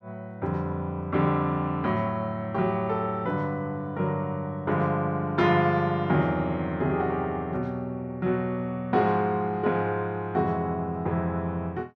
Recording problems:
none

